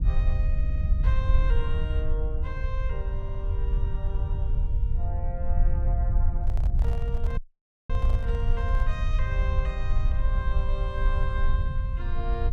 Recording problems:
rumble; below 66 Hz, SNR -11 dB
audio stuttering; at 0.5 s and at 3 s
handling noise; from 6.5 to 9 s; peak -2 dB vs average level
audio cutting out; at 7.5 s for 0.5 s

